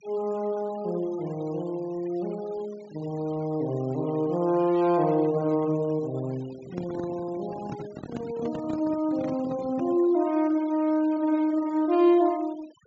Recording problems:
low-pass filter; nothing above 8 kHz
noise reduction artefacts; signal-to-artefact ratio 23 dB
handling noise; from 6.5 to 10 s; peak -6 dB vs average level

